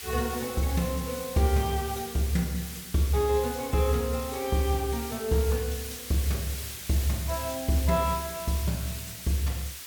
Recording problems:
background hiss; slope +2 dB per octave, SNR 9 dB

